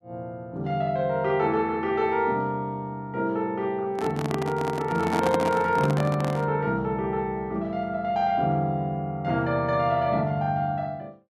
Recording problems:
handling noise; from 4 to 6.5 s; peak +2 dB vs average level

